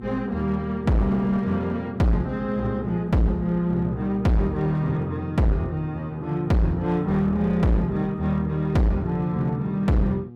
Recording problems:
distorted audio; hard clipping, uneven, signal-to-distortion ratio 6 dB
hum; 60 Hz, harmonics up to 840 Hz, SNR 18 dB

